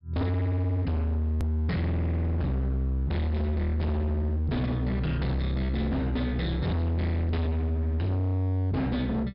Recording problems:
treble cut off; nothing above 5.2 kHz
distorted audio; hard clipping, signal-to-distortion ratio 7 dB
edit click; at 1.5 s

